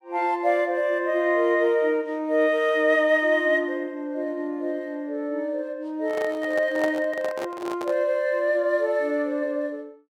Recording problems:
handling noise; from 6 to 8 s; peak -3 dB vs average level

